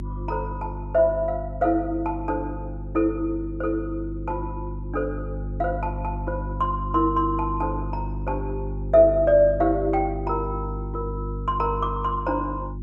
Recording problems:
electrical hum; 50 Hz, harmonics up to 350 Hz, SNR 8 dB

